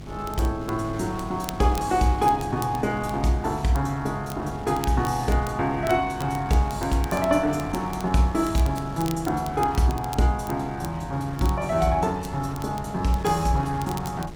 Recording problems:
electrical hum; 50 Hz, harmonics up to 350 Hz, SNR 16 dB
wind on the microphone; below 540 Hz, SNR 16 dB
crackle; vinyl, SNR 19 dB

